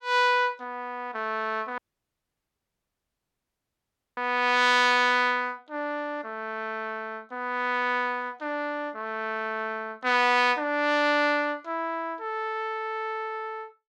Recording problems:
audio cutting out; at 2 s for 2.5 s

